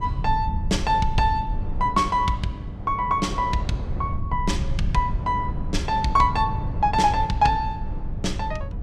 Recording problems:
electrical hum; 50 Hz, harmonics up to 1 kHz, SNR 19 dB
rumble; below 98 Hz, SNR 7 dB
wind noise; below 540 Hz, SNR 18 dB

